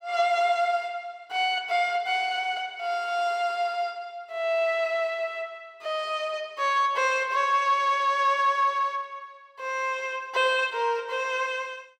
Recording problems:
none

